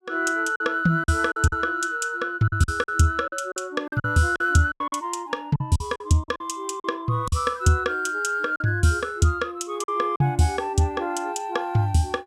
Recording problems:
lost packets; 8% of the sound replaced, filled with silence

